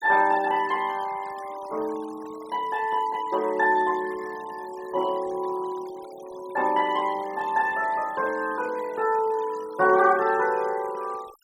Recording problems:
noise reduction artefacts; signal-to-artefact ratio 21 dB

